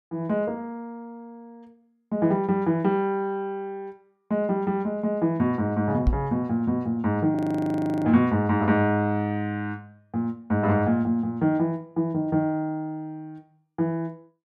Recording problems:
microphone thump; at 6 s; peak +6 dB vs average level
audio freezing; at 7.5 s for 0.5 s

